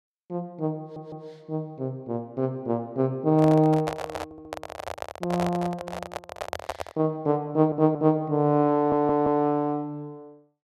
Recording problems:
stutter; 4 times, first at 1 s
microphone handling noise; from 3.5 to 7 s; peak -1 dB vs average level

